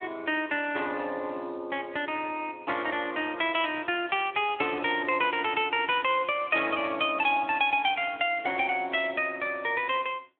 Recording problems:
phone line; 280 Hz to 3.4 kHz, Speex

